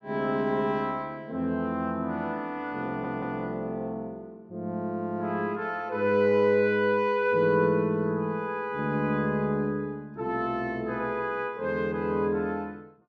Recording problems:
audio stuttering; at 3 s

